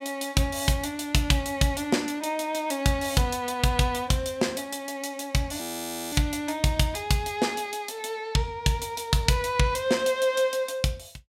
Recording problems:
audio freezing; at 5.5 s for 0.5 s

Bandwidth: 16 kHz